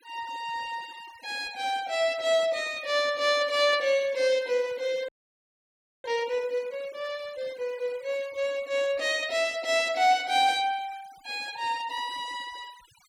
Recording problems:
denoising artefacts; signal-to-artefact ratio 22 dB
audio freezing; at 5 s for 1 s

